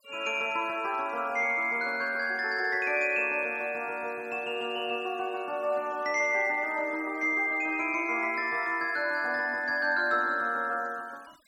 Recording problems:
noise reduction artefacts; signal-to-artefact ratio 27 dB

